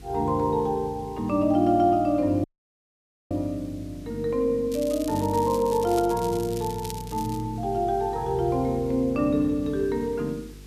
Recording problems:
hum; 50 Hz, harmonics up to 500 Hz, SNR 19 dB
hiss; slope 0 dB per octave, SNR 28 dB
dropout; at 2.5 s for 1 s
crackling; from 4.5 to 7.5 s; loose cable, SNR 16 dB

